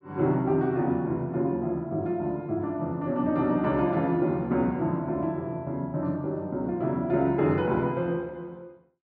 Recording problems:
none

